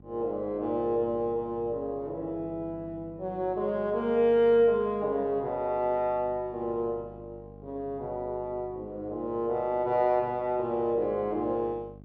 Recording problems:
hum; 50 Hz, harmonics up to 850 Hz, SNR 21 dB

